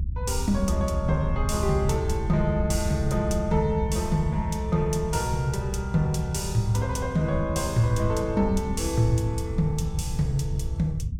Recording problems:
low-frequency rumble; below 94 Hz, SNR 4 dB

